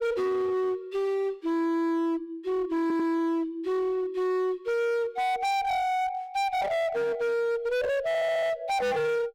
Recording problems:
distortion; hard clipping, uneven, signal-to-distortion ratio 6 dB
stutter; at 3 s and at 8 s

